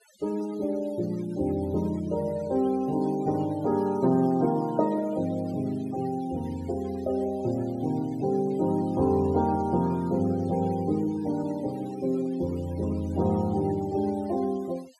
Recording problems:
noise reduction artefacts; signal-to-artefact ratio 22 dB

